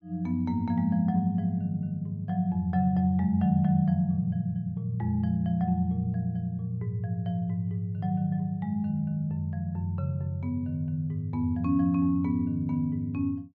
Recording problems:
none

